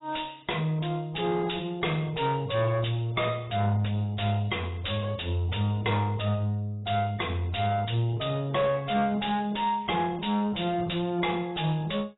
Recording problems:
lossy codec; AAC, log-spectral distance 6 dB, nothing above 3.8 kHz
distorted audio; soft clipping, signal-to-distortion ratio 10 dB

